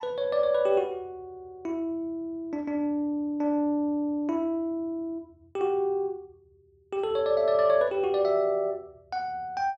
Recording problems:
none

